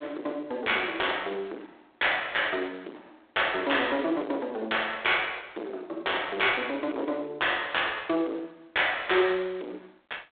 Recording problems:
telephone audio; 280 Hz to 3.6 kHz, G.726
distorted audio; soft clipping, signal-to-distortion ratio 11 dB

